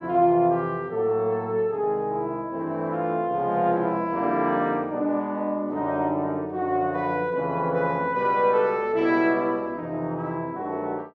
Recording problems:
none

